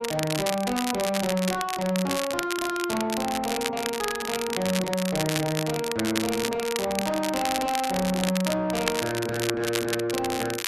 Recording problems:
distorted audio; soft clipping, signal-to-distortion ratio 10 dB
crackle; vinyl, SNR 4 dB

